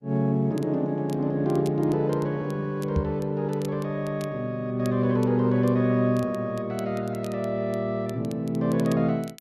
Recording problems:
lossy compression; Opus, log-spectral distance 2 dB
crackle; vinyl, SNR 25 dB
microphone bump; at 3 s; peak +3 dB vs average level

